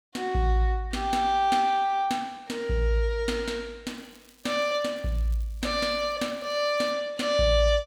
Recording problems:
crackling; from 4 to 7 s; loose cable, SNR 29 dB

